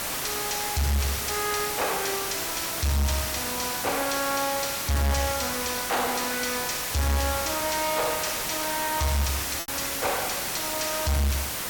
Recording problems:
distorted audio; soft clipping, signal-to-distortion ratio 5 dB
hiss; slope -2 dB per octave, SNR 2 dB
packet loss; 0.7% of the sound replaced, filled with repeated pitch periods

